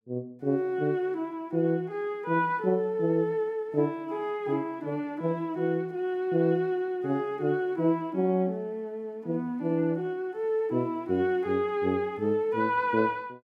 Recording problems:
none

